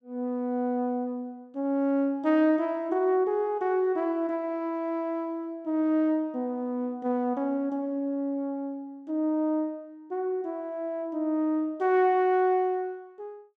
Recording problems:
none

